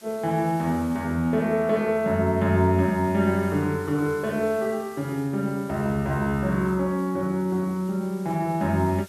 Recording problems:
background hiss; slope 0 dB per octave, SNR 24 dB

